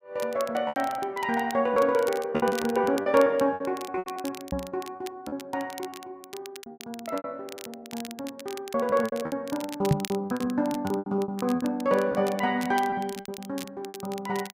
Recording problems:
crackle; vinyl, SNR 16 dB
lost packets; 18% of the sound replaced, filled with repeated pitch periods
microphone thump; at 4.5 s and at 10 s; peak +9 dB vs average level

